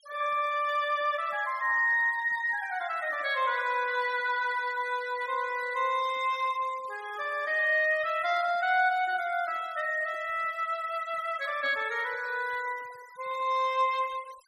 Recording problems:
denoising artefacts; signal-to-artefact ratio 22 dB

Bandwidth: 14 kHz